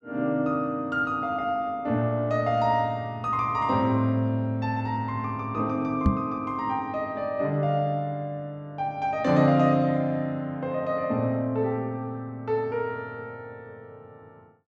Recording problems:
microphone thump; at 6 s; peak +8 dB vs average level

